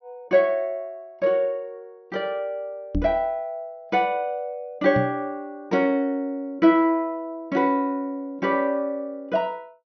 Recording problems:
treble missing; nothing above 6 kHz
knock on the microphone; at 3 s and at 5 s; peak +2 dB vs average level

